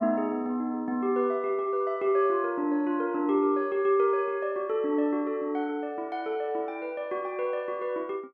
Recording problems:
none

